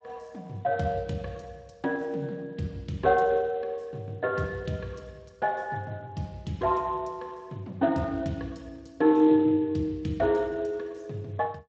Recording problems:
codec artefacts; Speex, log-spectral distance 3 dB

